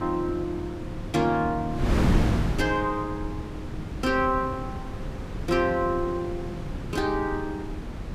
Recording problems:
wind on the microphone; below 290 Hz, SNR 4 dB

